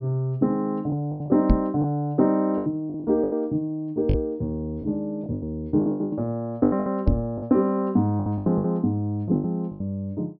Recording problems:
treble cut off; nothing above 5.5 kHz
lost packets; 12% of the sound replaced, filled with the last packet
microphone thump; at 1.5 s, at 4 s and at 7 s; peak +8 dB vs average level

